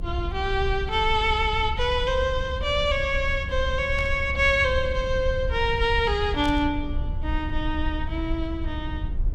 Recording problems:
low-frequency rumble; below 74 Hz, SNR 7 dB
burst of static; at 4 s and at 6.5 s; peak -11 dB vs average level

